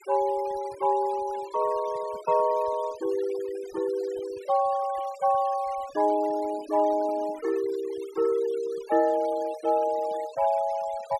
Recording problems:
noise reduction artefacts; signal-to-artefact ratio 20 dB

